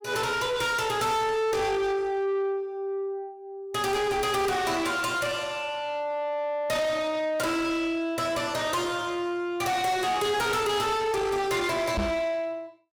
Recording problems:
distortion; soft clipping, signal-to-distortion ratio 8 dB
knock on the microphone; at 12 s; peak +2 dB vs average level

